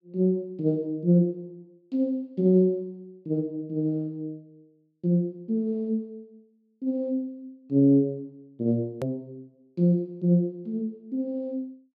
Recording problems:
hard cut with a click; at 9 s

